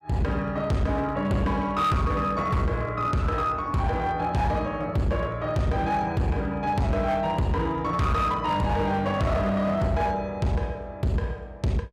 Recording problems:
distorted audio; hard clipping, signal-to-distortion ratio 10 dB

